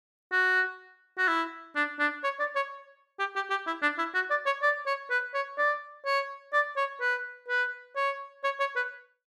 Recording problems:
none

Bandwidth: 14 kHz